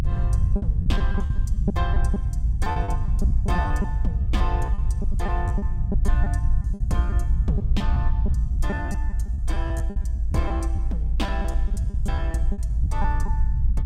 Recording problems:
low-frequency rumble; below 76 Hz, SNR -8 dB
lost packets; 13% of the sound replaced, filled with repeated pitch periods

